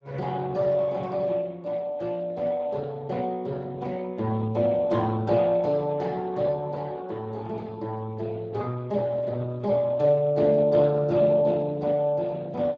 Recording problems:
lossy codec; Speex, log-spectral distance 3 dB

